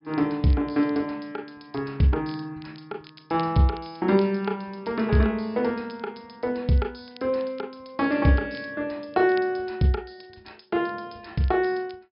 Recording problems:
low-pass filter; nothing above 5.5 kHz
crackling; vinyl, SNR 27 dB

